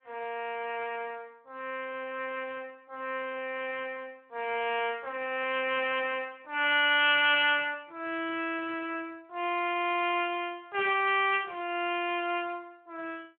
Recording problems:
telephone audio; 280 Hz to 3.2 kHz, Speex

